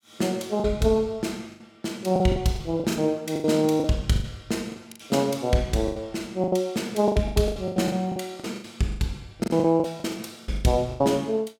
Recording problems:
lost packets; 16% of the sound replaced, filled with the last packet

